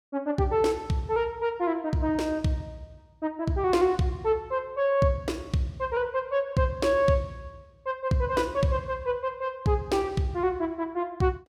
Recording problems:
none

